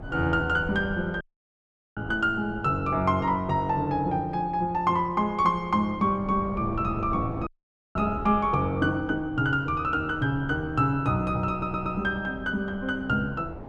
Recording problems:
wind on the microphone; below 430 Hz, SNR 15 dB
audio cutting out; at 1 s for 1 s and at 7.5 s
stutter; at 12 s

